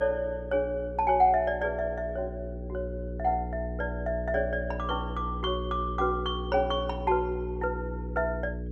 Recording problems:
hum; 60 Hz, harmonics up to 480 Hz, SNR 7 dB

